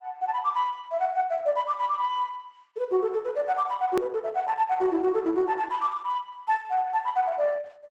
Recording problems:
codec artefacts; Opus, log-spectral distance 3 dB, nothing above 18.3 kHz
edit click; at 4 s

